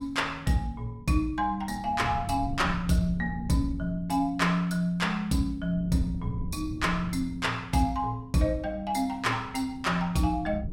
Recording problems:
wind on the microphone; below 150 Hz, SNR 13 dB

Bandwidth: 16.5 kHz